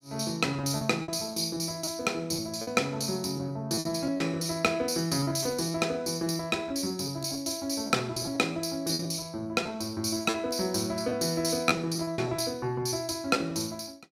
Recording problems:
packet loss; 11% of the sound replaced, filled with repeated pitch periods

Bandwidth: 16 kHz